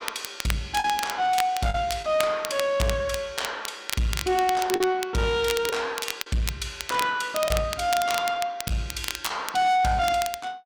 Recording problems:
distorted audio; soft clipping, signal-to-distortion ratio 11 dB
crackling; vinyl, SNR 8 dB
lost packets; 3% of the sound replaced, filled with the last packet

